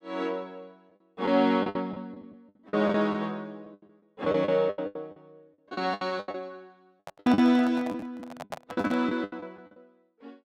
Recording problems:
packet loss; 16% of the sound replaced, filled with the last packet
handling noise; from 7 to 9 s; peak -4 dB vs average level

